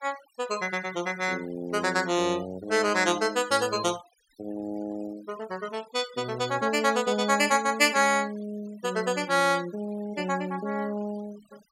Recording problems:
noise reduction artefacts; signal-to-artefact ratio 20 dB

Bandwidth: 16 kHz